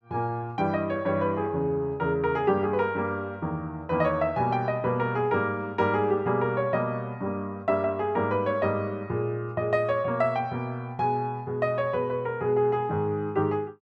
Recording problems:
none

